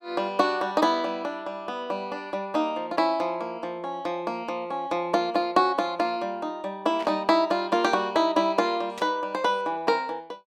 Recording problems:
burst of static; at 7 s and at 9 s; peak -9 dB vs average level

